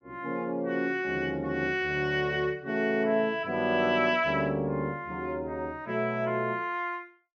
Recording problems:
none

